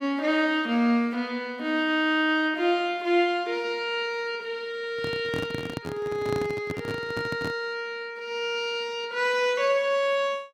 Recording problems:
handling noise; from 5 to 7.5 s; peak -2 dB vs average level

